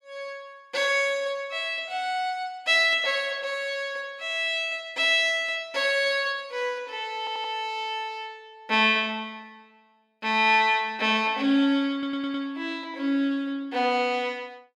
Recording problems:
audio stuttering; at 7 s and at 12 s

